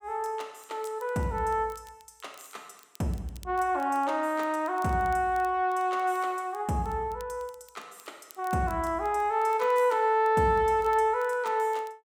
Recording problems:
crackling; vinyl, SNR 28 dB

